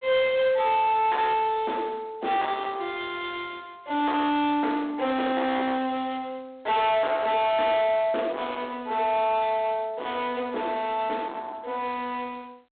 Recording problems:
telephone audio; 280 Hz to 3.9 kHz, G.726
distortion; soft clipping, signal-to-distortion ratio 7 dB

